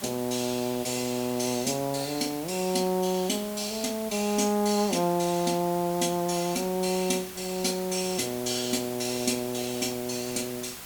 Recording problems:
hiss; slope -1 dB per octave, SNR 12 dB

